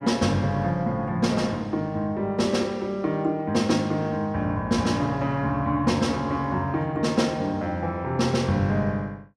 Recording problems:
none

